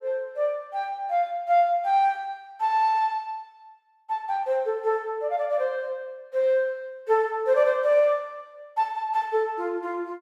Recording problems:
none

